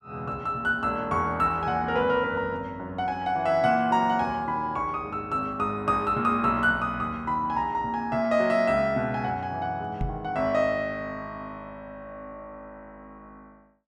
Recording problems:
microphone thump; at 10 s; peak 0 dB vs average level

